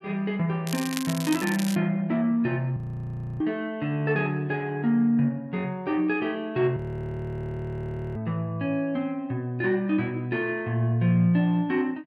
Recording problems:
crackling; from 0.5 to 2 s; loose cable, SNR 9 dB
audio freezing; at 3 s for 0.5 s and at 7 s for 1.5 s

